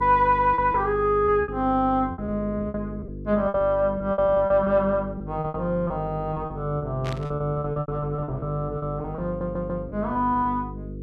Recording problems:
electrical hum; 50 Hz, harmonics up to 500 Hz, SNR 11 dB
packet loss; 13% of the sound replaced, filled with repeated pitch periods
static burst; at 7 s; peak -8 dB vs average level
audio stuttering; at 9.5 s

